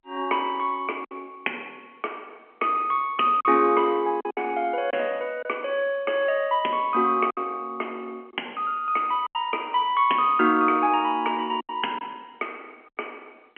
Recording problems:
phone line; 240 Hz to 3.1 kHz, G.711
packet loss; 4% of the sound replaced, filled with silence

